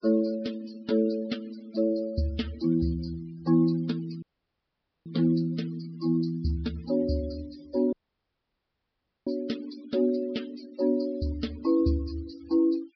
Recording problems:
low-pass filter; nothing above 5.5 kHz
denoising artefacts; signal-to-artefact ratio 21 dB
audio cutting out; at 4 s for 1 s and at 8 s for 1.5 s

